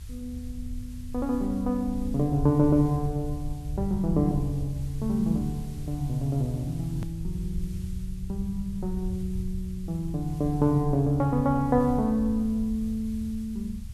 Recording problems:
hiss; SNR 26 dB
rumble; below 84 Hz, SNR 10 dB
hard cut with a click; at 7 s

